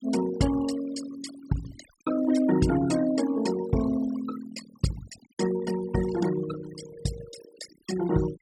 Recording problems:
noise reduction artefacts; signal-to-artefact ratio 11 dB

